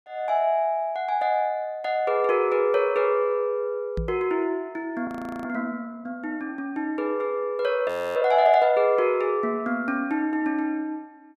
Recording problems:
knock on the microphone; at 4 s; peak -2 dB vs average level
audio freezing; at 5 s and at 8 s

